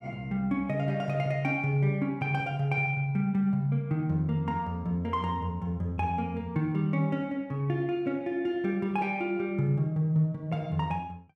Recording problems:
none

